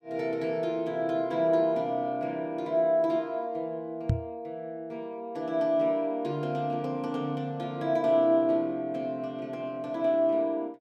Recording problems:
knock on the microphone; at 4 s; peak +6 dB vs average level

